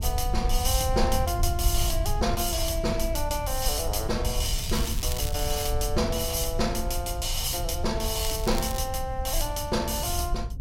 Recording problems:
low-frequency rumble; below 76 Hz, SNR 4 dB
crackle; from 4.5 to 5.5 s and at 8 s; loose cable, SNR 10 dB

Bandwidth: 16 kHz